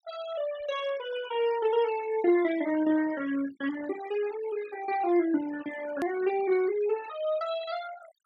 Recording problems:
noise reduction artefacts; signal-to-artefact ratio 14 dB
click at an edit; at 6 s

